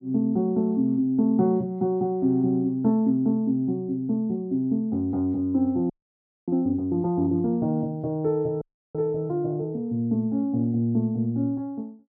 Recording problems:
audio freezing; at 6 s for 0.5 s and at 8.5 s

